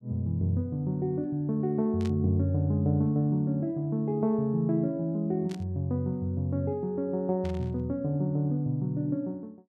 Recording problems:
burst of static; at 2 s, at 5.5 s and at 7.5 s; peak -12 dB vs average level

